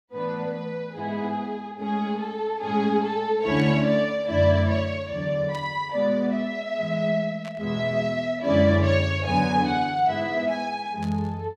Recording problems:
static burst; 4 times, first at 3.5 s; peak -14 dB vs average level

